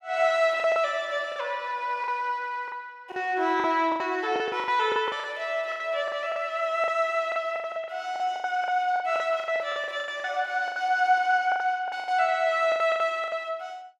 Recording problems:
packet loss; 15% of the sound replaced, filled with the last packet

